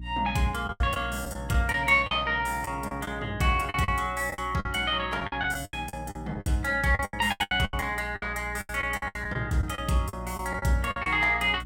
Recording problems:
hum; 60 Hz, harmonics up to 300 Hz, SNR 14 dB
packet loss; 15% of the sound replaced, filled with the last packet

